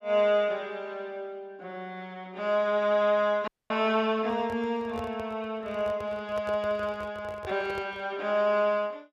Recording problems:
frozen audio; at 3.5 s
handling noise; from 4 to 8 s; peak -8 dB vs average level

